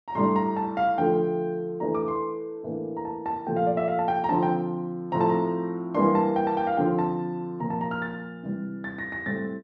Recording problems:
none

